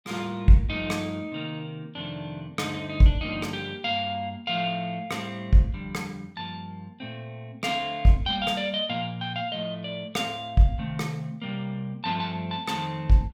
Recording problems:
none

